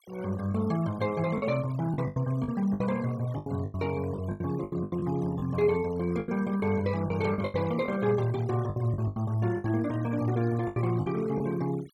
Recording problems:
noise reduction artefacts; signal-to-artefact ratio 19 dB
lost packets; 12% of the sound replaced, filled with the last packet

